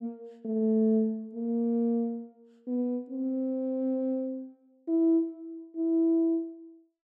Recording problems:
none

